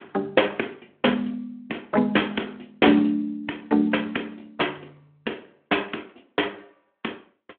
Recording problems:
phone line; 220 Hz to 3.4 kHz, Speex

